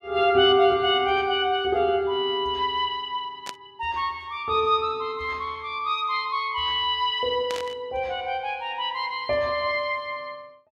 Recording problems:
static burst; at 3.5 s and at 7.5 s; peak -6 dB vs average level

